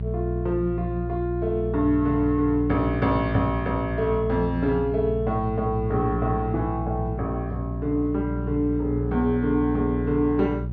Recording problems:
electrical hum; 60 Hz, harmonics up to 420 Hz, SNR 5 dB

